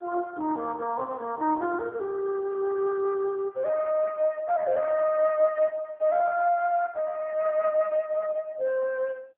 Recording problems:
phone line; 320 Hz to 2.1 kHz, AMR-NB

